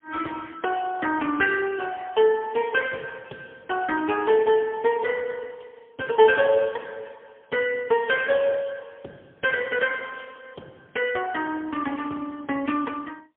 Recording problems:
phone line; 260 Hz to 3.4 kHz, AMR-NB, then MP3

